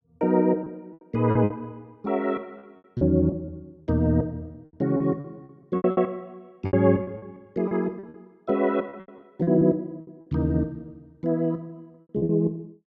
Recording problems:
packet loss; 11% of the sound replaced, filled with repeated pitch periods

